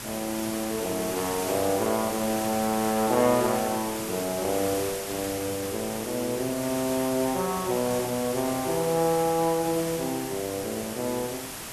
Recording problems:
hiss; slope -2 dB per octave, SNR 6 dB

